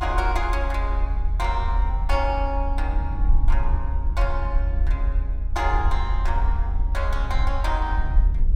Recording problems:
rumble; below 56 Hz, strongest tone 42 Hz, SNR -4 dB

